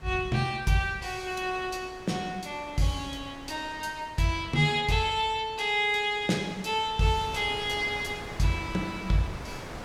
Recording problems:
wind noise; below 1.6 kHz, SNR 16 dB

